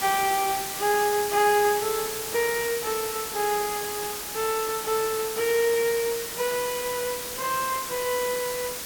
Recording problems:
background hiss; slope -1 dB per octave, SNR 5 dB

